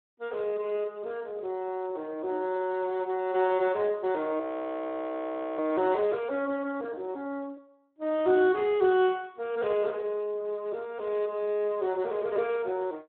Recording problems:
telephone audio; 280 Hz to 3.7 kHz, Speex
frozen audio; at 4.5 s for 1 s

